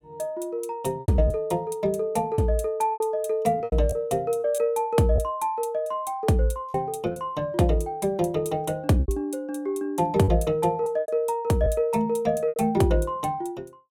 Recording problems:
lost packets; 7% of the sound replaced, filled with repeated pitch periods

